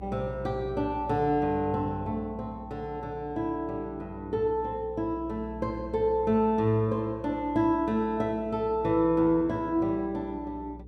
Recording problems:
hum; 60 Hz, harmonics up to 480 Hz, SNR 17 dB

